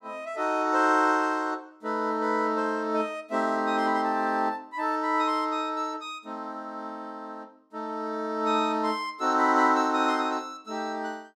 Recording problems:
none

